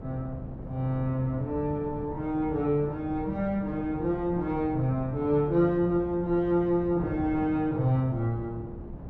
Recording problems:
wind on the microphone; below 270 Hz, SNR 12 dB

